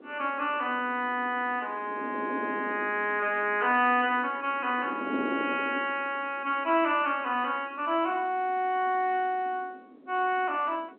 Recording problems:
phone line; 220 Hz to 3.2 kHz, G.711
wind noise; below 450 Hz, SNR 12 dB

